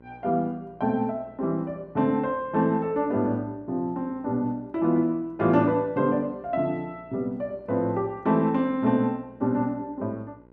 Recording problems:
mains hum; 60 Hz, harmonics up to 1.6 kHz, SNR 27 dB

